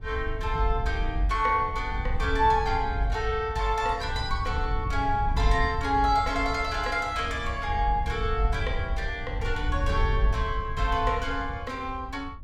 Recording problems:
wind on the microphone; below 80 Hz, SNR 6 dB

